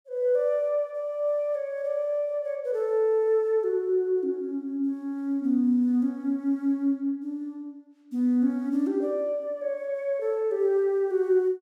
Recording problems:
none

